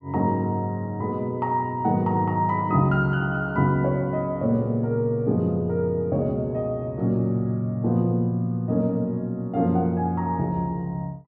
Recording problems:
none

